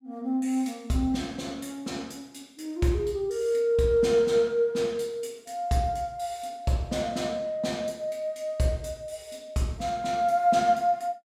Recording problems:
none

